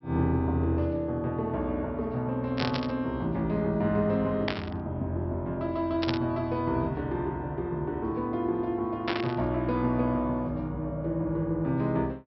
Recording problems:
treble missing; nothing above 5.6 kHz
burst of static; 4 times, first at 2.5 s; peak +2 dB vs average level

